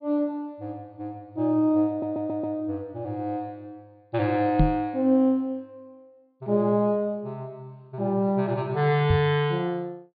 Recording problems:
treble missing; nothing above 4.8 kHz
stutter; at 2 s
microphone thump; at 4.5 s and at 9 s; peak +7 dB vs average level

